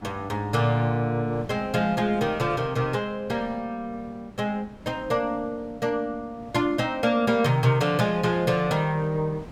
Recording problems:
wind noise; below 480 Hz, SNR 20 dB

